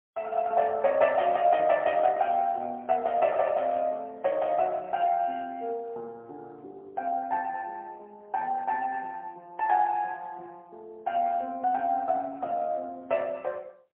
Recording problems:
phone line; 340 Hz to 3.3 kHz, AMR-NB, then MP3

